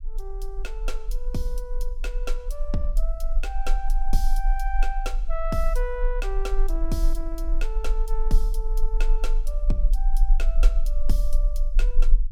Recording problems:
low-frequency rumble; below 36 Hz, strongest tone 20 Hz, SNR -7 dB

